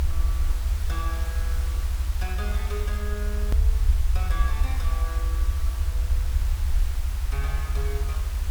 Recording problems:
hiss; slope -2 dB per octave, SNR 3 dB
rumble; below 72 Hz, SNR -12 dB
click at an edit; at 3.5 s

